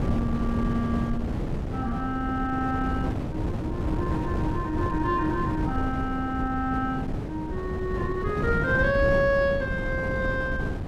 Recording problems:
wind noise; below 290 Hz, SNR 2 dB

